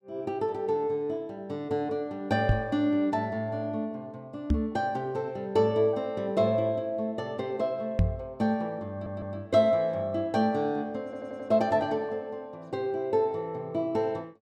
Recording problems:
microphone bump; at 2.5 s, at 4.5 s and at 8 s; peak +8 dB vs average level
audio stuttering; at 9 s and at 11 s

